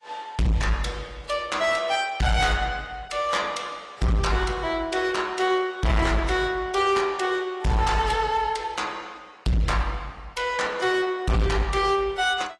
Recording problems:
lossy codec; AAC, log-spectral distance 3 dB
distorted audio; hard clipping, signal-to-distortion ratio 7 dB

